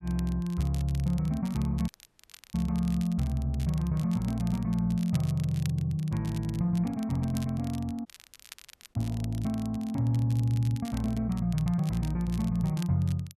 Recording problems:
crackling; vinyl, SNR 20 dB
dropout; at 2 s for 0.5 s and at 8 s for 1 s

